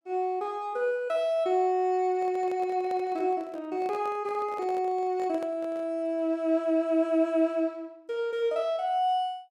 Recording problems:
handling noise; from 2 to 6 s; peak -11 dB vs average level

